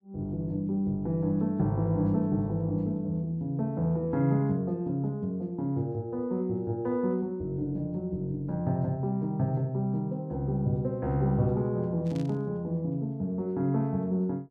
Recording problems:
static burst; at 12 s; peak -15 dB vs average level

